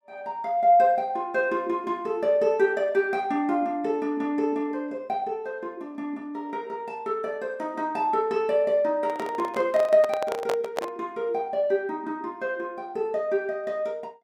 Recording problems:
handling noise; from 9 to 11 s; peak +2 dB vs average level

